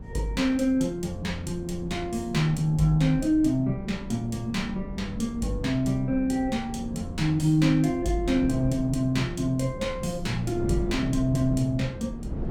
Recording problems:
wind noise; below 230 Hz, SNR 11 dB

